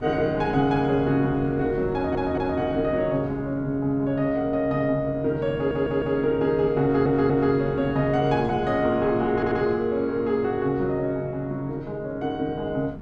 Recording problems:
wind noise; below 330 Hz, SNR 14 dB
audio stuttering; 4 times, first at 2 s

